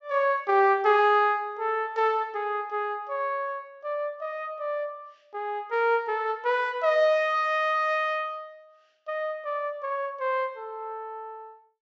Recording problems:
treble cut off; nothing above 8 kHz

